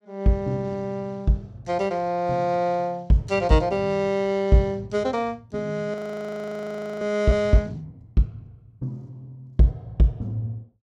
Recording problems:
frozen audio; at 6 s for 1 s

